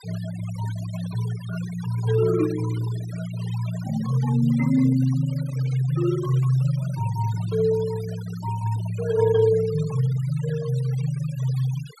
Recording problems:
noise reduction artefacts; signal-to-artefact ratio 18 dB

